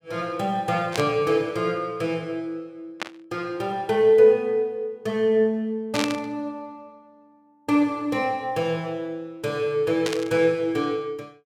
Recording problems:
static burst; 4 times, first at 1 s; peak 0 dB vs average level

